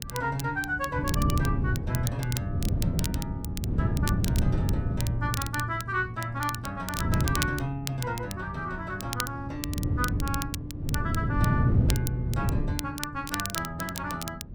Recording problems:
wind noise; below 180 Hz, SNR -3 dB
crackle; vinyl, SNR 6 dB

